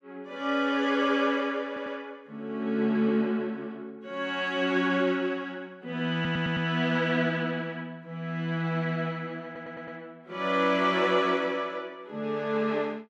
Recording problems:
stutter; at 1.5 s, at 6 s and at 9.5 s

